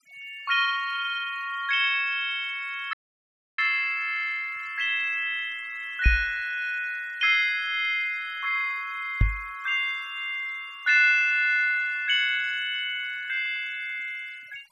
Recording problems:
noise reduction artefacts; signal-to-artefact ratio 27 dB
audio cutting out; at 3 s for 0.5 s
microphone thump; at 6 s and at 9 s; peak +7 dB vs average level

